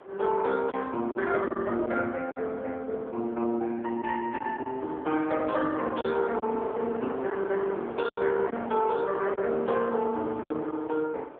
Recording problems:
telephone audio; 280 Hz to 2.6 kHz, AMR-NB
wind on the microphone; below 1 kHz, SNR 12 dB
lost packets; 5% of the sound replaced, filled with silence

